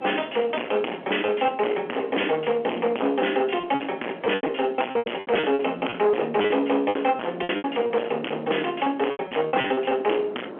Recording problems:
telephone audio; 240 Hz to 3.3 kHz, G.711
distorted audio; soft clipping, signal-to-distortion ratio 7 dB
wind noise; below 850 Hz, SNR 16 dB
lost packets; 11% of the sound replaced, filled with repeated pitch periods

